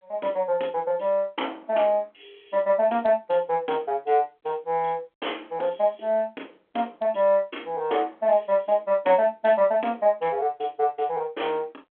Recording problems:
telephone audio; 260 Hz to 3.4 kHz, G.726

